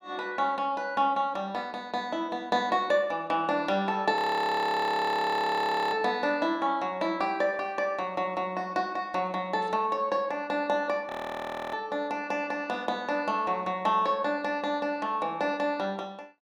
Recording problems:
frozen audio; at 4 s for 2 s and at 11 s for 0.5 s

